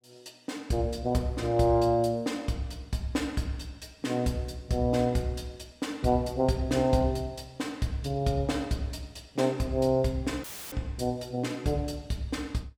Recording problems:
dropout; at 10 s; filled with static

